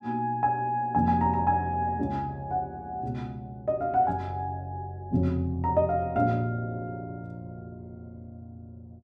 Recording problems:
none

